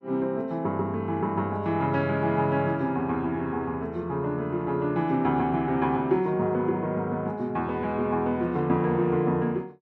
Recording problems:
none

